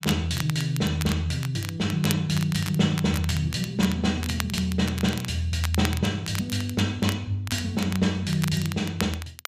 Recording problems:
crackle; vinyl, SNR 11 dB

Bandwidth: 14.5 kHz